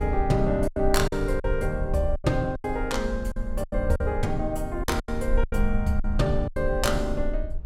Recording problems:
low-frequency rumble; below 50 Hz, SNR 6 dB
lost packets; 11% of the sound replaced, filled with silence

